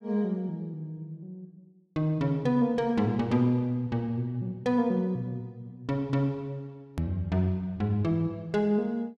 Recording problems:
click at an edit; at 7 s

